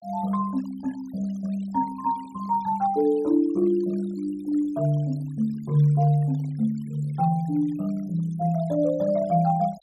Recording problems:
noise reduction artefacts; signal-to-artefact ratio 26 dB

